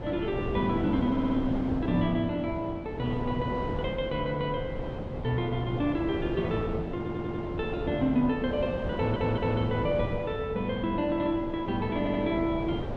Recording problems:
wind noise; below 490 Hz, SNR 6 dB
audio stuttering; 4 times, first at 1 s

